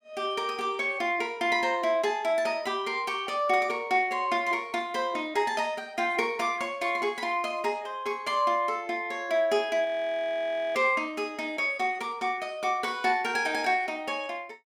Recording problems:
frozen audio; at 10 s for 1 s

